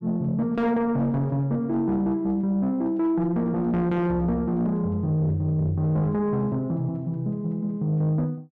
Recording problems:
distortion; soft clipping, signal-to-distortion ratio 10 dB

